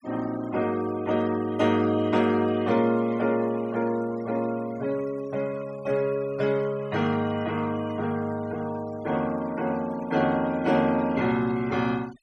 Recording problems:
noise reduction artefacts; signal-to-artefact ratio 21 dB

